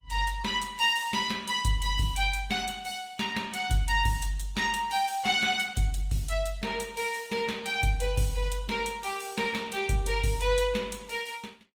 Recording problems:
lossy codec; Opus, log-spectral distance 4 dB, nothing above 19 kHz

